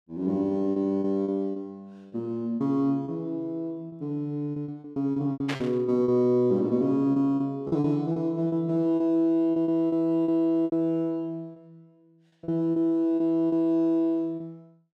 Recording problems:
lost packets; 11% of the sound replaced, filled with repeated pitch periods
static burst; at 5.5 s; peak -2 dB vs average level

